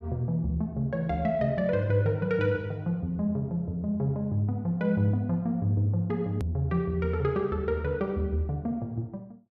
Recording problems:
click at an edit; at 6.5 s

